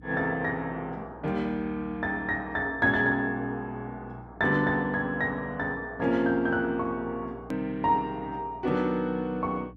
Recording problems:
hum; 60 Hz, harmonics up to 300 Hz, SNR 21 dB
edit click; at 7.5 s

